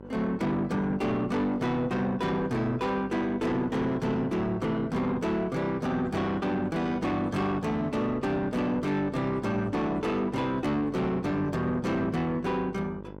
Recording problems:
distortion; soft clipping, signal-to-distortion ratio 10 dB
hum; 50 Hz, harmonics up to 1.5 kHz, SNR 15 dB

